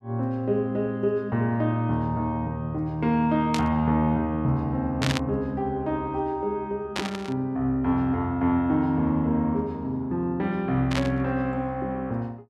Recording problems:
burst of static; 4 times, first at 3.5 s; peak +2 dB vs average level

